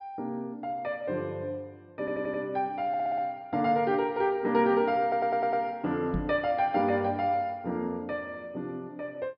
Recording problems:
treble missing; nothing above 5.5 kHz
stutter; at 2 s, at 3 s and at 5 s
knock on the microphone; at 6 s; peak 0 dB vs average level

